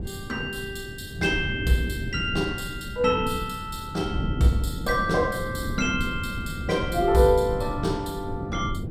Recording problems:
wind on the microphone; below 220 Hz, SNR 7 dB

